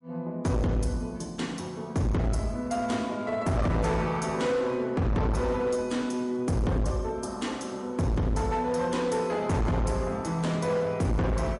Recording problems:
codec artefacts; MP3, log-spectral distance 2 dB, nothing above 11 kHz
distorted audio; hard clipping, signal-to-distortion ratio 7 dB

